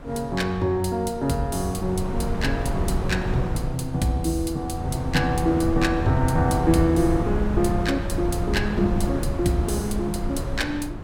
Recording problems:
wind on the microphone; below 200 Hz, SNR 5 dB

